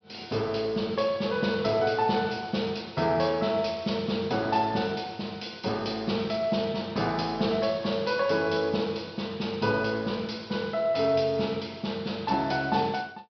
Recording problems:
low-pass filter; nothing above 5.5 kHz

